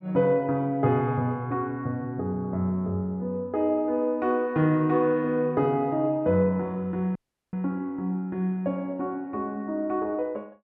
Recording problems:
audio cutting out; at 7 s

